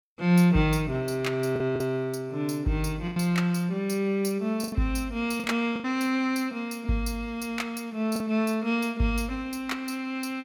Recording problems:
lost packets; 4% of the sound replaced, filled with the last packet

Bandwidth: 18 kHz